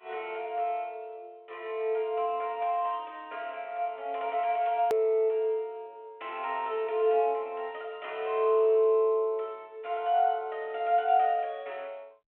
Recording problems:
telephone audio; 280 Hz to 3.5 kHz, G.726
hard cut with a click; at 5 s

